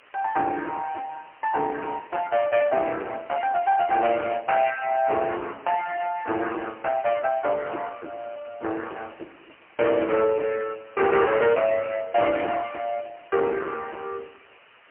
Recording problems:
telephone audio; 260 Hz to 3.1 kHz, AMR-NB, then MP3
distortion; hard clipping, signal-to-distortion ratio 12 dB
hiss; SNR 27 dB

